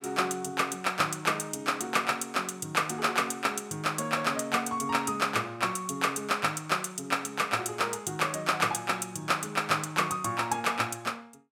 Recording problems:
none

